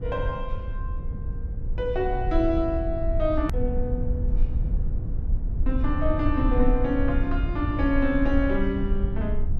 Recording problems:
low-frequency rumble; below 72 Hz, SNR 2 dB
hard cut with a click; at 3.5 s

